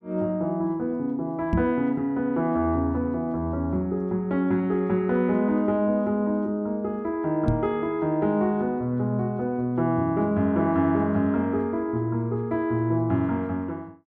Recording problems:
microphone thump; at 1.5 s and at 7.5 s; peak +3 dB vs average level

